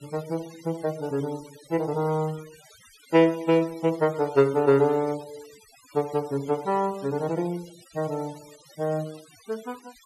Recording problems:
denoising artefacts; signal-to-artefact ratio 22 dB

